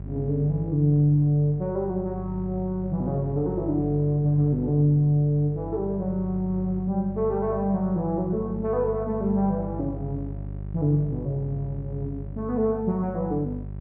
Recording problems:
hum; 50 Hz, harmonics up to 600 Hz, SNR 11 dB

